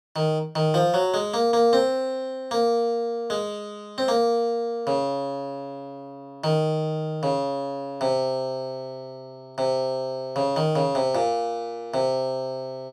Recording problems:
none

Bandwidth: 14.5 kHz